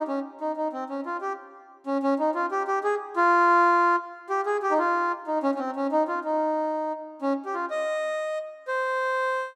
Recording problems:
none

